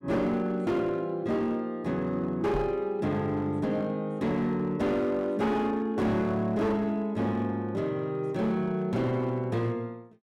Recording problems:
distortion; hard clipping, signal-to-distortion ratio 10 dB
knock on the microphone; at 2.5 s; peak -1 dB vs average level

